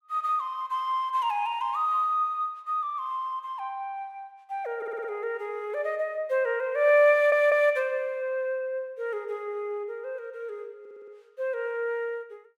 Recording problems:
stutter; at 5 s, at 7 s and at 11 s

